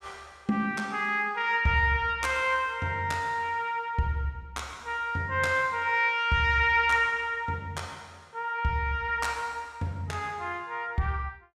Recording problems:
none

